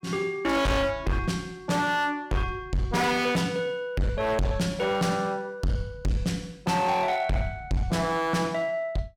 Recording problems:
distortion; hard clipping, signal-to-distortion ratio 6 dB

